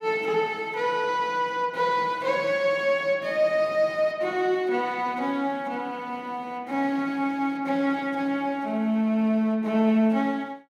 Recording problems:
none

